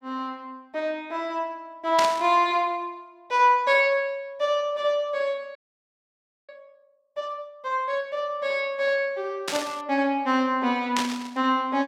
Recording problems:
static burst; at 2 s, at 9.5 s and at 11 s; peak +2 dB vs average level
audio freezing; at 5.5 s for 1 s

